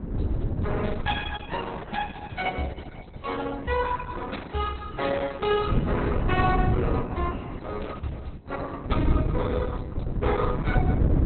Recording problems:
lossy codec; Opus, log-spectral distance 4 dB, nothing above 3.9 kHz
wind noise; below 220 Hz, SNR -2 dB

